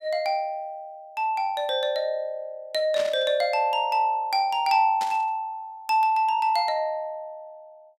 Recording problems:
static burst; at 3 s and at 5 s; peak -6 dB vs average level

